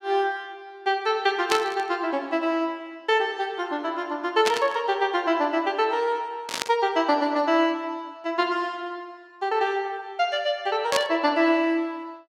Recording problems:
static burst; 4 times, first at 1.5 s; peak +3 dB vs average level

